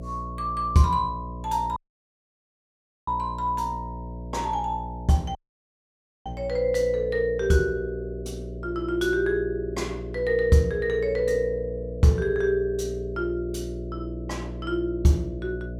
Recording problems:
electrical hum; 60 Hz, harmonics up to 660 Hz, SNR 11 dB
dropout; at 2 s for 1.5 s and at 5.5 s for 1 s

